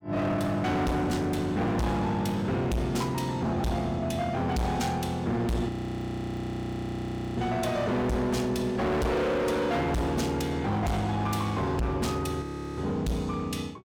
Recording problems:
distortion; hard clipping, uneven, signal-to-distortion ratio 6 dB
audio freezing; at 5.5 s for 1.5 s and at 12 s

